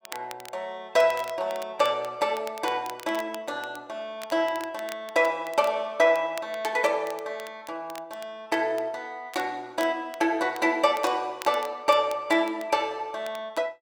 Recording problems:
crackling; vinyl, SNR 20 dB

